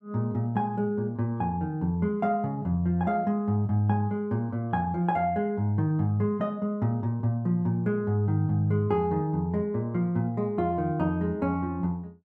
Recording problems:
none

